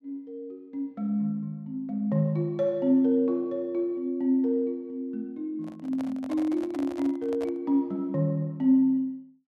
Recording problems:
handling noise; from 5.5 to 7.5 s; peak -8 dB vs average level

